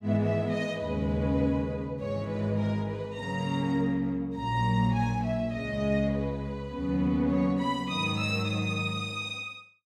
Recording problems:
none

